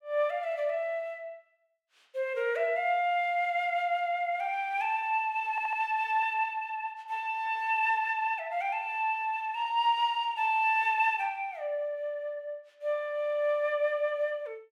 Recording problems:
stutter; at 5.5 s

